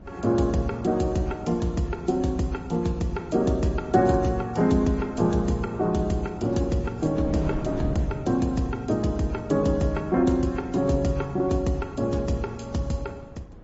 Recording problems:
treble cut off; nothing above 7.6 kHz
lossy codec; AAC, then MP3, log-spectral distance 2 dB
wind on the microphone; below 310 Hz, SNR 17 dB

